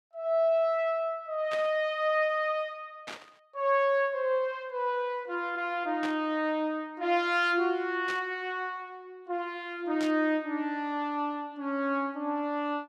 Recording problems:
burst of static; 5 times, first at 1.5 s; peak -5 dB vs average level

